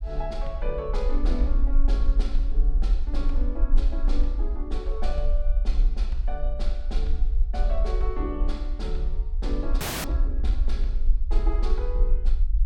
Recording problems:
rumble; below 44 Hz, strongest tone 22 Hz, SNR -8 dB
audio freezing; at 10 s

